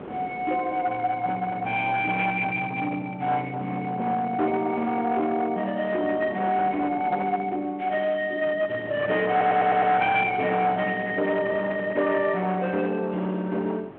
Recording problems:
phone line; 450 Hz to 3.7 kHz, G.726
distorted audio; hard clipping, uneven, signal-to-distortion ratio 12 dB
wind on the microphone; below 900 Hz, SNR 16 dB
audio stuttering; at 9.5 s

